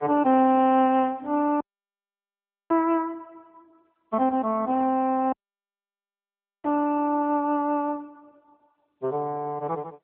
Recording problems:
phone line; 170 Hz to 3.4 kHz, AMR-NB
audio cutting out; at 1.5 s for 1 s and at 5.5 s for 1.5 s

